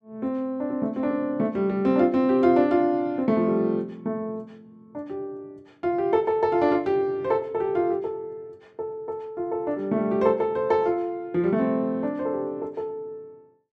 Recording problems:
none

